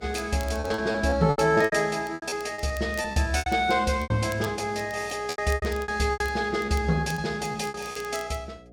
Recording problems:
hum; 60 Hz, harmonics up to 720 Hz, SNR 25 dB
crackle; vinyl, SNR 23 dB
packet loss; 14% of the sound replaced, filled with repeated pitch periods

